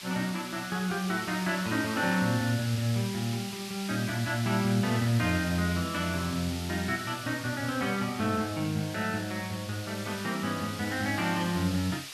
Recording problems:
hiss; SNR 10 dB

